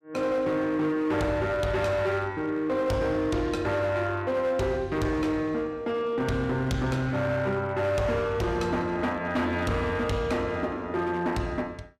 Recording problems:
distorted audio; hard clipping, signal-to-distortion ratio 11 dB

